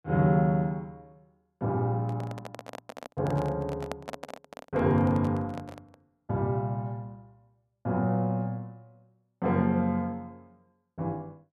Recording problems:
handling noise; from 2 to 6 s; peak -3 dB vs average level

